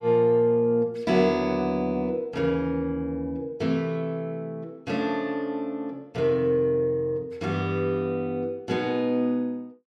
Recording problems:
none

